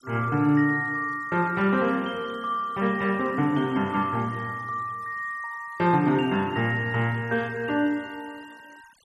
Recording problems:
denoising artefacts; signal-to-artefact ratio 27 dB

